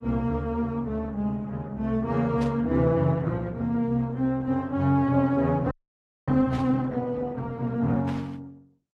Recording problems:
lossy compression; AAC, then Opus, log-spectral distance 2 dB
static burst; at 2.5 s, at 6.5 s and at 8 s; peak -14 dB vs average level
frozen audio; at 5.5 s for 0.5 s

